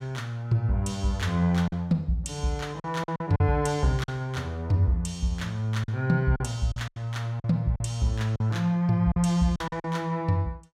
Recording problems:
lost packets; 7% of the sound replaced, filled with silence

